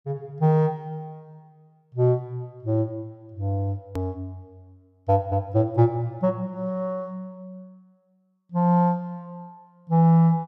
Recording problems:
edit click; at 4 s

